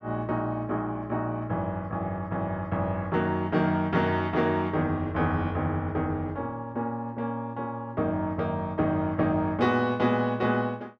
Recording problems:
none

